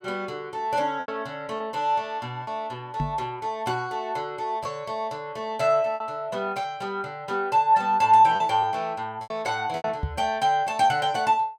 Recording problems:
lost packets; 4% of the sound replaced, filled with repeated pitch periods
knock on the microphone; at 3 s and at 10 s; peak +1 dB vs average level

